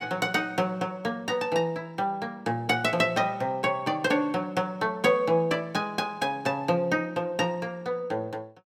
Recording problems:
none

